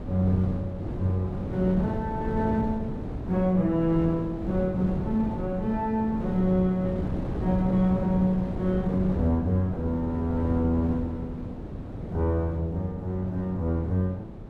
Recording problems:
wind on the microphone; below 310 Hz, SNR 7 dB

